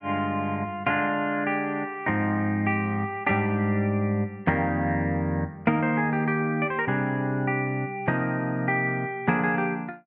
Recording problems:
none

